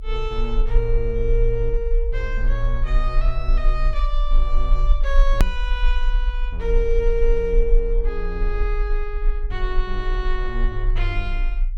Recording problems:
rumble; below 36 Hz, strongest tone 30 Hz, SNR -3 dB
edit click; at 5.5 s

